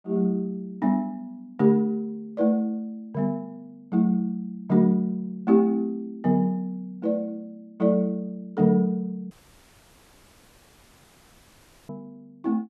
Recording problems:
dropout; at 9.5 s for 2.5 s

